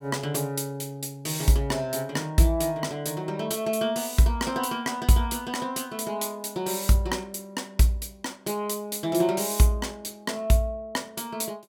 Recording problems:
none

